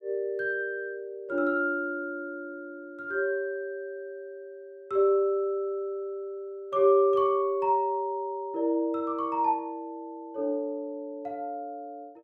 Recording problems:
none

